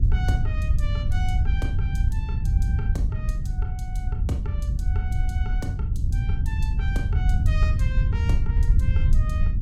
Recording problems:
wind noise; below 90 Hz, SNR -13 dB

